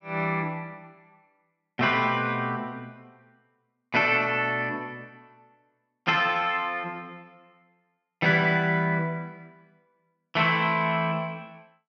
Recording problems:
none

